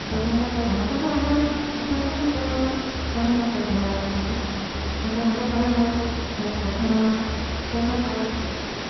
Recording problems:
treble cut off; nothing above 5.8 kHz
background hiss; slope -3 dB per octave, SNR 5 dB

